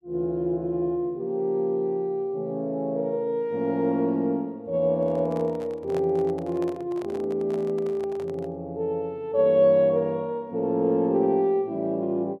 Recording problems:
microphone handling noise; from 5 to 8.5 s; peak -9 dB vs average level

